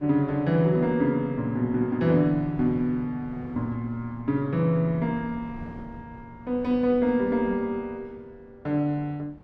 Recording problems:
wind on the microphone; below 330 Hz, SNR 21 dB

